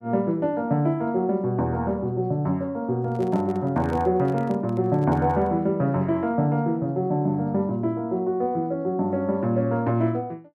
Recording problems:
handling noise; from 3 to 5.5 s; peak -9 dB vs average level

